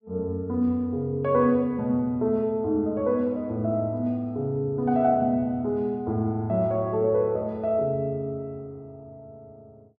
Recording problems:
none

